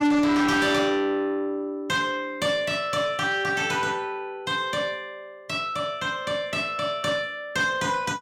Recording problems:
distorted audio; soft clipping, signal-to-distortion ratio 8 dB

